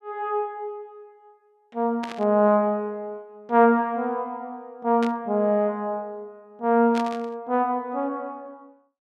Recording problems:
static burst; at 2 s, at 5 s and at 7 s; peak -7 dB vs average level

